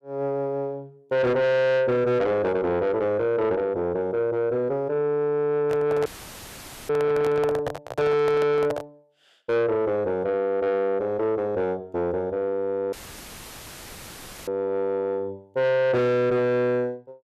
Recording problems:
distorted audio; soft clipping, signal-to-distortion ratio 8 dB
handling noise; from 5.5 to 9 s; peak 0 dB vs average level
audio cutting out; at 6 s for 1 s and at 13 s for 1.5 s; filled with static

